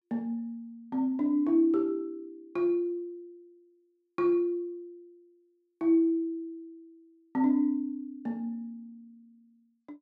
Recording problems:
none

